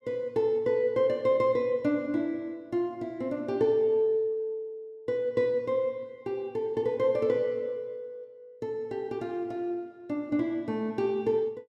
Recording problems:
none

